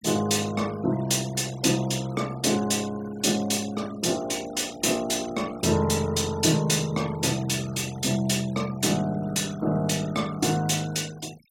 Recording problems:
denoising artefacts; signal-to-artefact ratio 20 dB

